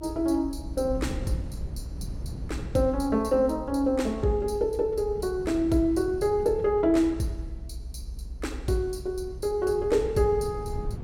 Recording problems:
rumble; below 110 Hz, SNR 12 dB

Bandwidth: 16.5 kHz